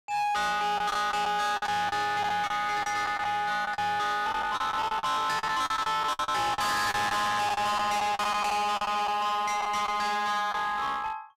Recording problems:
distorted audio; hard clipping, uneven, signal-to-distortion ratio 5 dB
lost packets; 10% of the sound replaced, filled with the last packet

